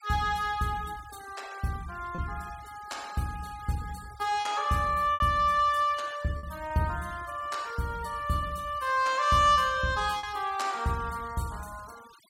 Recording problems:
denoising artefacts; signal-to-artefact ratio 21 dB
lost packets; 2% of the sound replaced, filled with repeated pitch periods

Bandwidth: 16.5 kHz